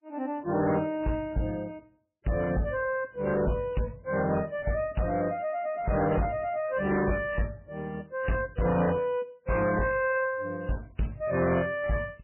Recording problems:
lossy compression; MP3, then MP3, log-spectral distance 3 dB, nothing above 2.4 kHz
distorted audio; hard clipping, uneven, signal-to-distortion ratio 10 dB

